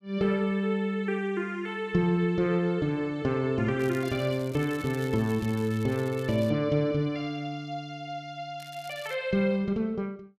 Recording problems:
crackling; from 4 to 6.5 s and at 8.5 s; loose cable, SNR 21 dB

